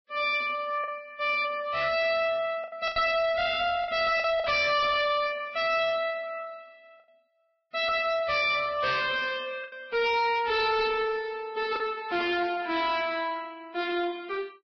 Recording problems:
codec artefacts; Vorbis, log-spectral distance 3 dB, nothing above 4.8 kHz
distortion; hard clipping, uneven, signal-to-distortion ratio 5 dB
packet loss; 3% of the sound replaced, filled with the last packet

